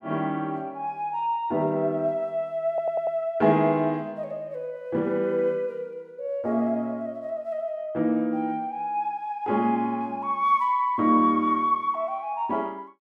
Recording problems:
audio stuttering; at 2.5 s

